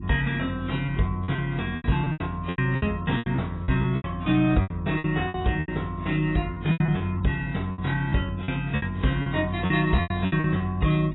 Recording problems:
codec artefacts; AAC, log-spectral distance 3 dB, nothing above 3.9 kHz
hum; 50 Hz, harmonics up to 350 Hz, SNR 12 dB
lost packets; 14% of the sound replaced, filled with repeated pitch periods

